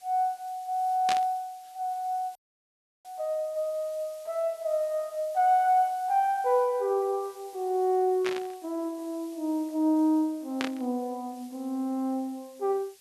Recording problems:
hiss; SNR 25 dB
burst of static; at 1 s, at 8 s and at 11 s; peak 0 dB vs average level
audio cutting out; at 2.5 s for 0.5 s

